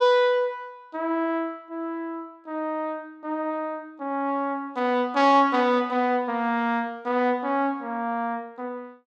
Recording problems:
none

